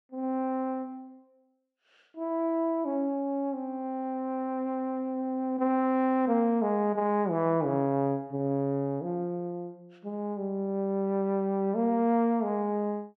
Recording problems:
none

